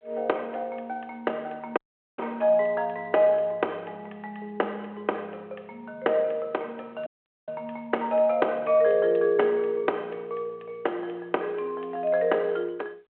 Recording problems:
phone line; 320 Hz to 3.6 kHz, G.726
dropout; at 2 s and at 7 s

